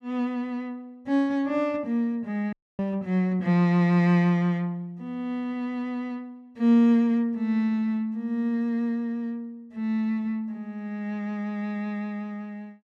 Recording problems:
dropout; at 2.5 s

